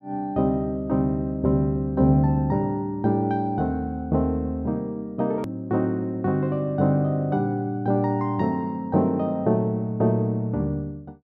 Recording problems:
click at an edit; at 5.5 s

